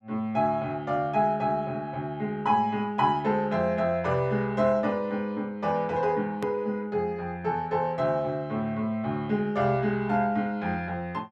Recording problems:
edit click; at 6.5 s

